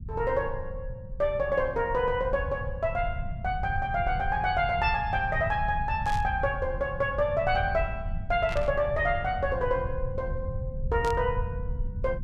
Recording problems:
low-frequency rumble; below 110 Hz, SNR 7 dB
burst of static; at 6 s, at 8.5 s and at 11 s; peak -8 dB vs average level

